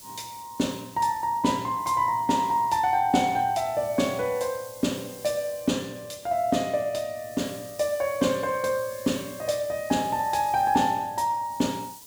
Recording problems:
background hiss; SNR 19 dB

